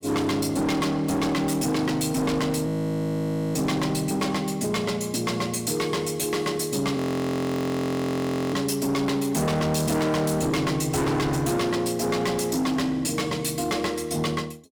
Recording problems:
distorted audio; hard clipping, signal-to-distortion ratio 7 dB
audio freezing; at 2.5 s for 1 s and at 7 s for 1.5 s

